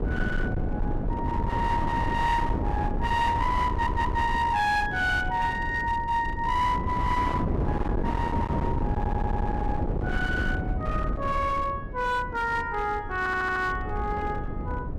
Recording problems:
distortion; hard clipping, signal-to-distortion ratio 11 dB
wind on the microphone; below 310 Hz, SNR 3 dB
stutter; at 3.5 s, at 9 s and at 13 s

